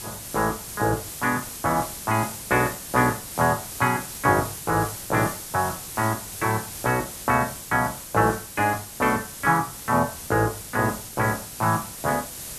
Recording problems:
hiss; SNR 10 dB

